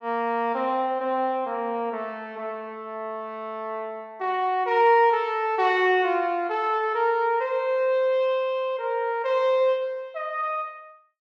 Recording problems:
none

